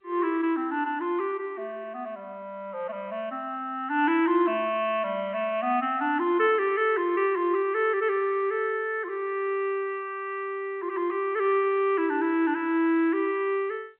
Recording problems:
telephone audio; 260 Hz to 3.2 kHz, G.711

